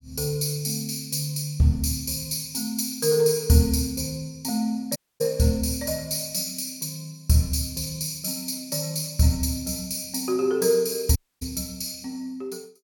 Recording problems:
dropout; at 5 s and at 11 s

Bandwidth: 17.5 kHz